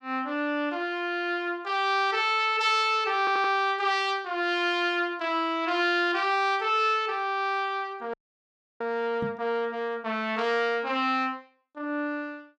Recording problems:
audio stuttering; at 3 s
audio freezing; at 8 s for 0.5 s
microphone thump; at 9 s; peak -4 dB vs average level

